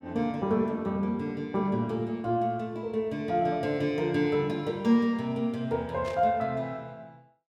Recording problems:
burst of static; at 6 s; peak -12 dB vs average level

